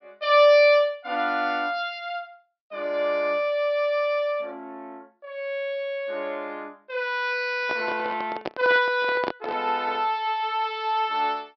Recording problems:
treble missing; nothing above 5.5 kHz
microphone handling noise; from 7.5 to 10 s; peak -1 dB vs average level

